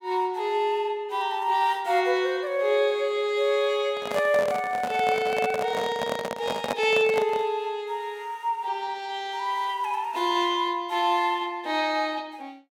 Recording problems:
microphone handling noise; from 4 to 7.5 s; peak +1 dB vs average level

